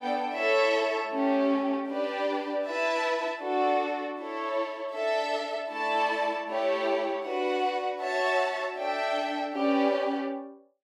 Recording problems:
none

